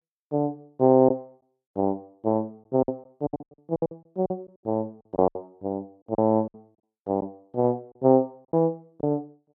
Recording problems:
packet loss; 10% of the sound replaced, filled with silence

